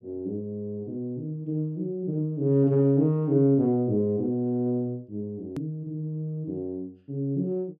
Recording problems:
edit click; at 5.5 s

